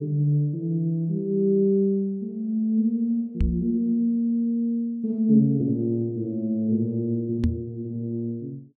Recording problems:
microphone bump; at 3.5 s and at 7.5 s; peak +4 dB vs average level

